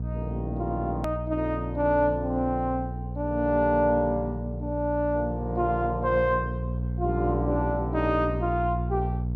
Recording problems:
mains hum; 60 Hz, harmonics up to 480 Hz, SNR 5 dB
hard cut with a click; at 1 s

